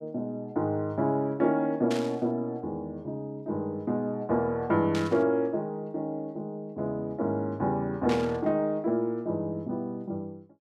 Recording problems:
burst of static; at 2 s, at 5 s and at 8 s; peak -3 dB vs average level

